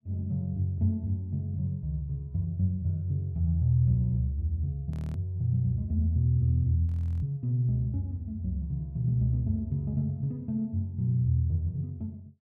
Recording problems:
frozen audio; at 5 s and at 7 s

